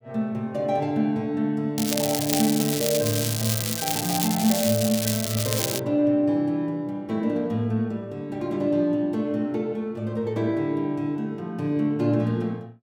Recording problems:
crackle; from 2 to 6 s; loose cable, SNR 2 dB

